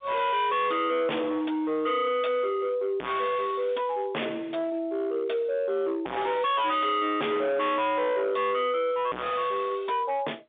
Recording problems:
telephone audio; 280 Hz to 3.6 kHz, G.711
distortion; hard clipping, signal-to-distortion ratio 0 dB

